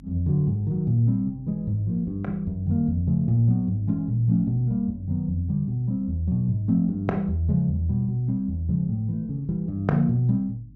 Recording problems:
mains hum; 50 Hz, harmonics up to 300 Hz, SNR 22 dB

